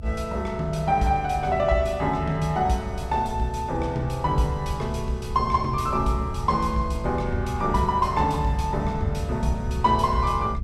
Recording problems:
low-frequency rumble; below 92 Hz, SNR 8 dB

